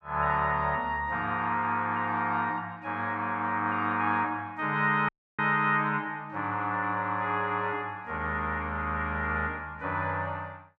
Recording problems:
audio cutting out; at 5 s

